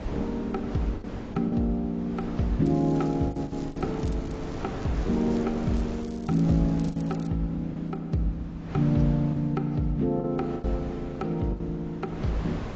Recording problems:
lossy compression; AAC, log-spectral distance 2 dB
wind on the microphone; below 510 Hz, SNR 12 dB
lost packets; 6% of the sound replaced, filled with the last packet
crackling; from 2.5 to 7.5 s; loose cable, SNR 26 dB

